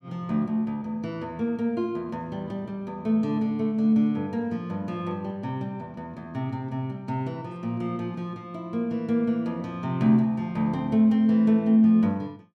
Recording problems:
none

